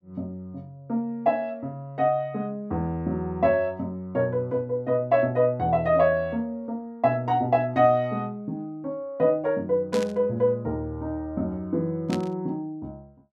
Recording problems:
static burst; at 10 s and at 12 s; peak -5 dB vs average level

